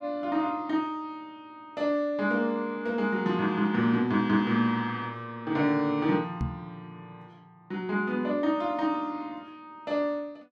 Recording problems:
knock on the microphone; at 6.5 s; peak +1 dB vs average level

